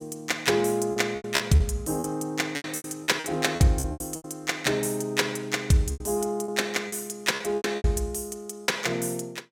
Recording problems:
packet loss; 12% of the sound replaced, filled with repeated pitch periods

